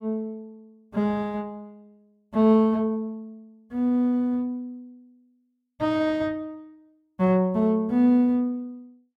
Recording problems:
none

